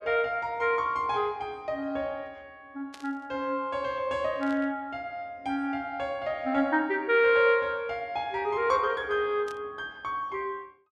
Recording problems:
burst of static; at 3 s, at 4.5 s and at 9.5 s; peak -13 dB vs average level

